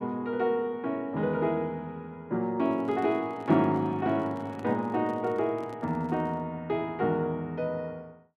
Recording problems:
microphone handling noise; from 2.5 to 6.5 s; peak -11 dB vs average level

